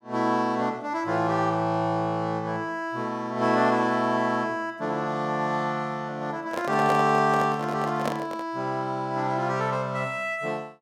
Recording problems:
handling noise; from 6.5 to 8.5 s; peak +1 dB vs average level

